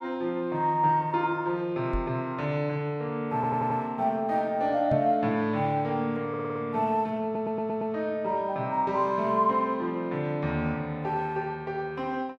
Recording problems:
microphone bump; at 2 s and at 5 s; peak +1 dB vs average level
audio stuttering; at 3.5 s, at 6.5 s and at 7 s

